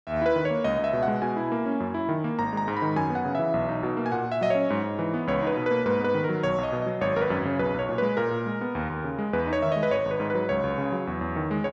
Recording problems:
none

